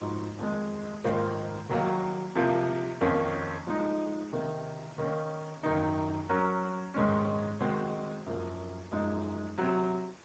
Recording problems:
codec artefacts; Speex, log-spectral distance 6 dB
background hiss; slope -4 dB per octave, SNR 20 dB

